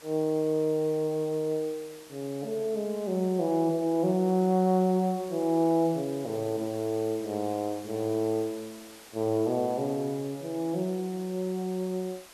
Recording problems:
background hiss; slope -1 dB per octave, SNR 20 dB

